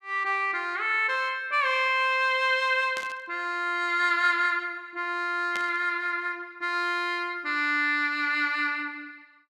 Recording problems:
static burst; at 3 s and at 5.5 s; peak -7 dB vs average level

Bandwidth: 14.5 kHz